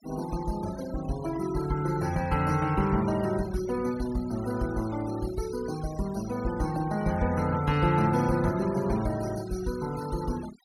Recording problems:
denoising artefacts; signal-to-artefact ratio 16 dB

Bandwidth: 16.5 kHz